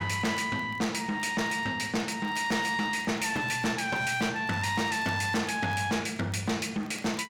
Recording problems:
distortion; soft clipping, signal-to-distortion ratio 8 dB
crackle; vinyl, SNR 28 dB

